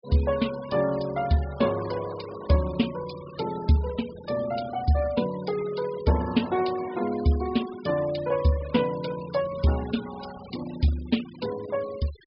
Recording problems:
treble cut off; nothing above 5 kHz
noise reduction artefacts; signal-to-artefact ratio 17 dB

